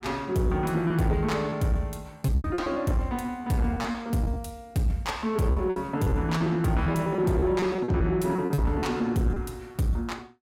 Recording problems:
distorted audio; soft clipping, signal-to-distortion ratio 11 dB
lost packets; 10% of the sound replaced, filled with repeated pitch periods

